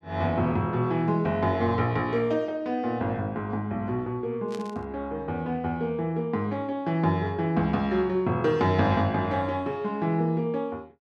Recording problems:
static burst; at 4.5 s; peak -12 dB vs average level

